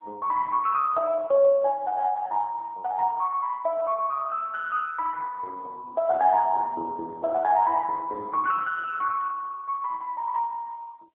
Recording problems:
phone line; 370 Hz to 2.2 kHz, AMR-NB

